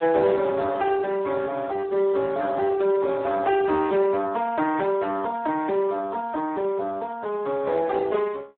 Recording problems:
phone line; 280 Hz to 2 kHz, Speex

